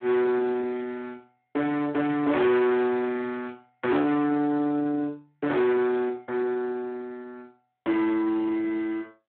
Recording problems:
telephone audio; 220 Hz to 3.2 kHz, Speex
distorted audio; soft clipping, signal-to-distortion ratio 7 dB

